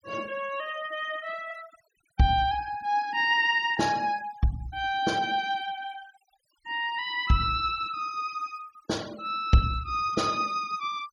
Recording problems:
noise reduction artefacts; signal-to-artefact ratio 21 dB

